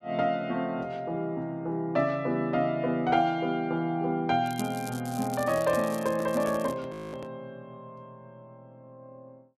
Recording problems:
crackle; from 4.5 to 6.5 s; loose cable, SNR 16 dB
handling noise; from 5 to 7.5 s; peak -6 dB vs average level
audio freezing; at 7 s

